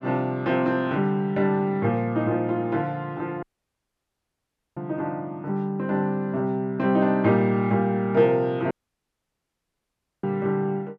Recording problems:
audio cutting out; at 3.5 s for 1.5 s and at 8.5 s for 1.5 s

